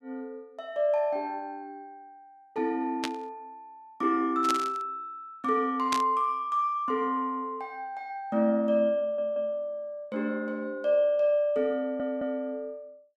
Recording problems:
burst of static; at 3 s, at 4.5 s and at 6 s; peak +1 dB vs average level
stutter; at 9 s and at 12 s

